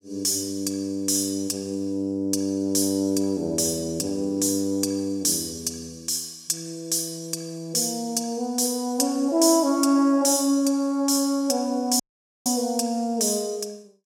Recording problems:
dropout; at 12 s

